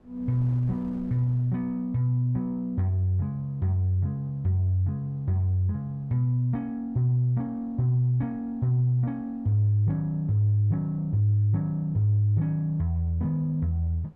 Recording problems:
wind noise; below 310 Hz, SNR 29 dB

